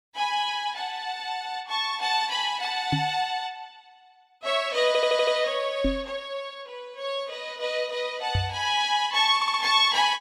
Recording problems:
microphone bump; at 3 s, at 6 s and at 8.5 s; peak +3 dB vs average level
stutter; at 5 s and at 9.5 s

